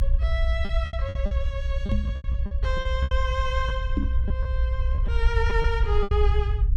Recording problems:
rumble; below 64 Hz, SNR -5 dB
lost packets; 12% of the sound replaced, filled with repeated pitch periods
microphone thump; at 2 s and at 4 s; peak +8 dB vs average level

